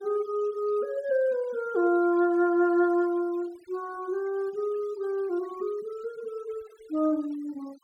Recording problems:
noise reduction artefacts; signal-to-artefact ratio 26 dB

